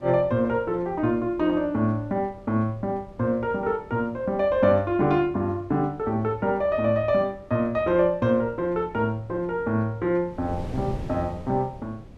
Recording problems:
wind noise; below 310 Hz, SNR 19 dB

